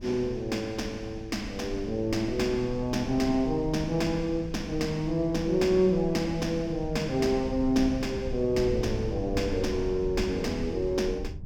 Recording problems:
wind on the microphone; below 100 Hz, SNR 12 dB

